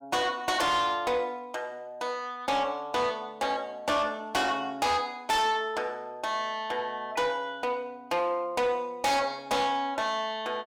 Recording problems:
distortion; soft clipping, signal-to-distortion ratio 8 dB

